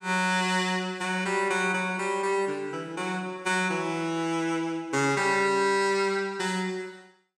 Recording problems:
none

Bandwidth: 16.5 kHz